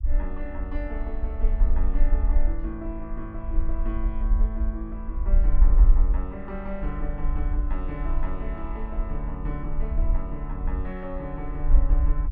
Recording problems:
rumble; below 46 Hz, strongest tone 22 Hz, SNR -8 dB

